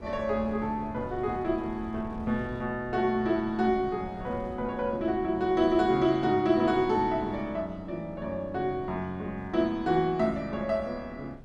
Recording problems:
wind noise; below 270 Hz, SNR 17 dB

